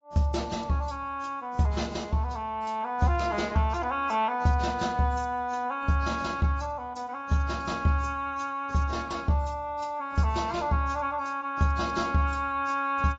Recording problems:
codec artefacts; AAC, log-spectral distance 2 dB, nothing above 7.3 kHz

